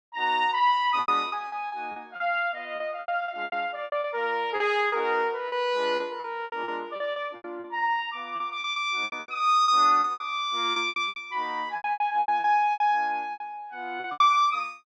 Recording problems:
packet loss; 16% of the sound replaced, filled with repeated pitch periods

